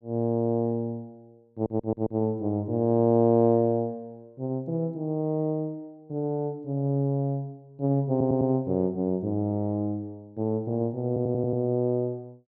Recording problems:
stutter; at 1.5 s, at 8 s and at 11 s

